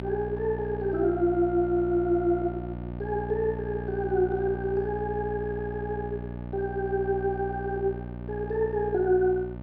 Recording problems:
hum; 60 Hz, harmonics up to 1.2 kHz, SNR 9 dB

